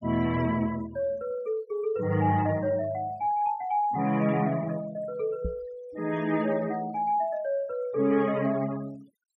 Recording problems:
denoising artefacts; signal-to-artefact ratio 22 dB
microphone thump; at 5.5 s; peak -1 dB vs average level

